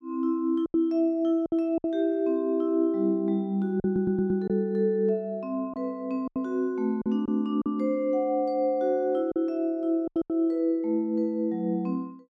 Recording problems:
packet loss; 6% of the sound replaced, filled with silence
stutter; at 4 s

